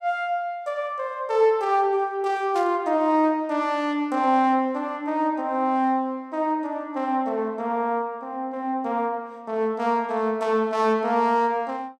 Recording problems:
static burst; at 2.5 s; peak -12 dB vs average level

